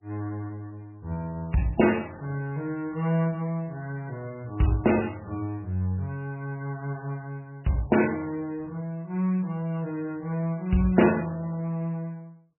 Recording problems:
lossy compression; MP3, log-spectral distance 2 dB, nothing above 2.8 kHz

